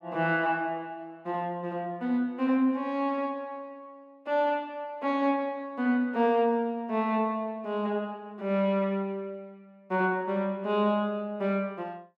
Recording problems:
none

